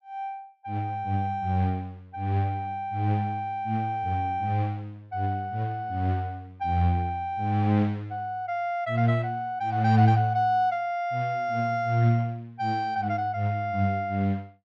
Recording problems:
none

